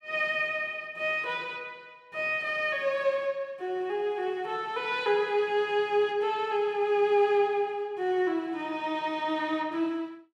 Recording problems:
none

